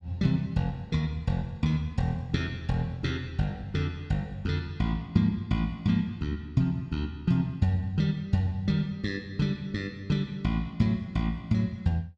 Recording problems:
none

